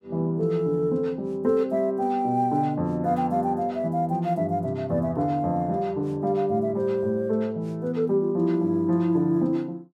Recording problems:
none

